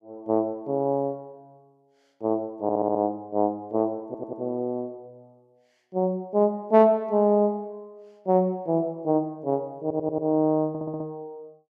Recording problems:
stutter; 4 times, first at 2.5 s

